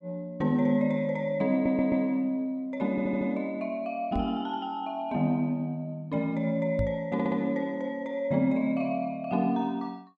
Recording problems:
audio stuttering; at 1.5 s, at 3 s and at 7 s
microphone bump; at 4 s and at 7 s; peak +1 dB vs average level

